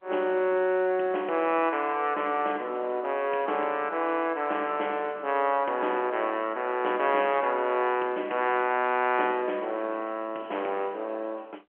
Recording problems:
telephone audio; 260 Hz to 3.1 kHz, G.711

